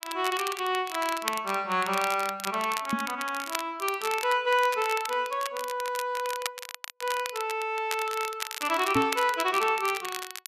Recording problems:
crackling; vinyl, SNR 9 dB
microphone thump; at 3 s and at 9 s; peak +4 dB vs average level

